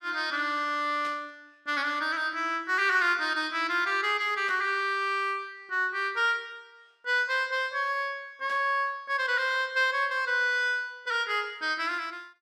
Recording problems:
static burst; at 1 s, at 4.5 s and at 8.5 s; peak -12 dB vs average level

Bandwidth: 14 kHz